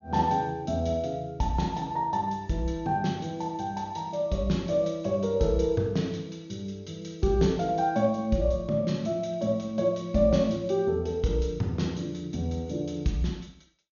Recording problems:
low-pass filter; nothing above 6.7 kHz

